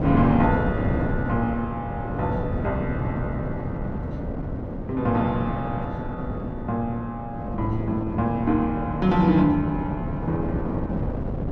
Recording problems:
wind on the microphone; below 330 Hz, SNR 4 dB

